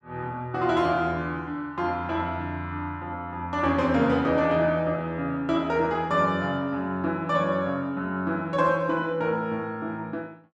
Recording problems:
none

